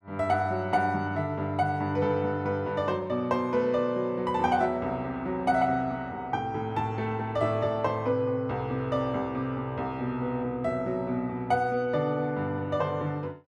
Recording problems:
none

